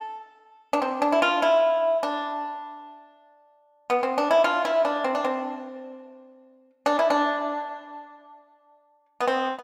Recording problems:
none

